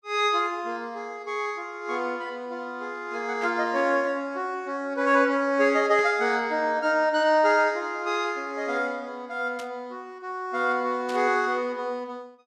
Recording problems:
burst of static; 4 times, first at 3.5 s; peak -10 dB vs average level

